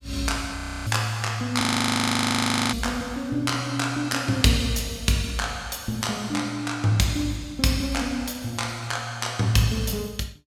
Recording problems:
frozen audio; at 0.5 s and at 1.5 s for 1 s

